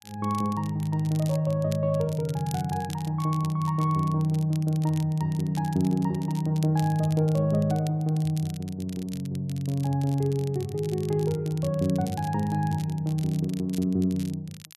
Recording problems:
crackle; vinyl, SNR 20 dB

